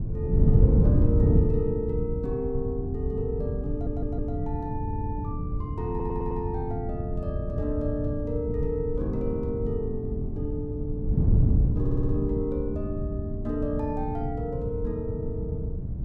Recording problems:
wind on the microphone; below 150 Hz, SNR -4 dB
audio stuttering; 4 times, first at 3.5 s

